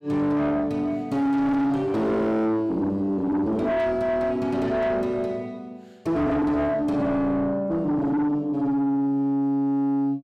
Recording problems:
distorted audio; soft clipping, signal-to-distortion ratio 8 dB

